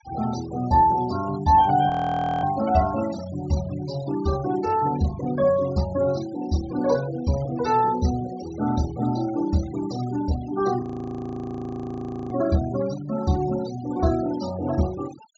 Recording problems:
treble cut off; nothing above 8 kHz
noise reduction artefacts; signal-to-artefact ratio 16 dB
audio freezing; at 2 s for 0.5 s and at 11 s for 1.5 s

